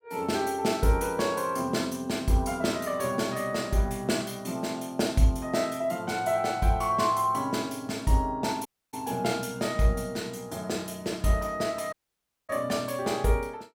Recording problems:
dropout; at 8.5 s and at 12 s for 0.5 s

